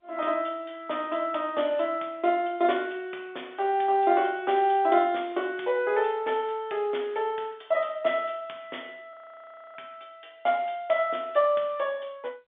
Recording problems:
phone line; 300 Hz to 3.6 kHz, G.711
frozen audio; at 9 s for 0.5 s

